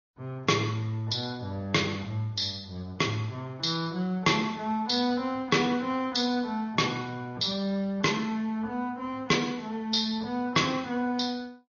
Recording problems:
treble missing; nothing above 6.2 kHz
lossy compression; MP3, log-spectral distance 3 dB
distortion; soft clipping, signal-to-distortion ratio 11 dB

